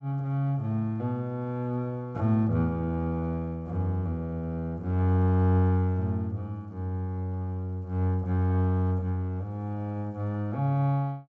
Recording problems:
treble cut off; nothing above 8 kHz

